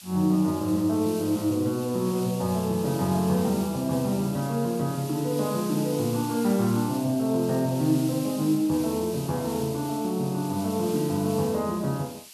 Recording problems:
background hiss; SNR 14 dB

